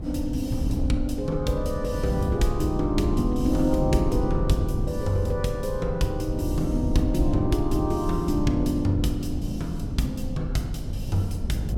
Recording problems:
wind on the microphone; below 130 Hz, SNR 3 dB

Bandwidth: 17 kHz